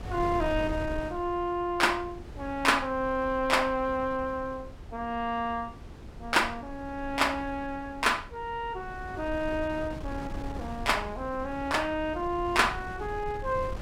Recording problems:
wind noise; below 240 Hz, SNR 13 dB

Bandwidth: 16.5 kHz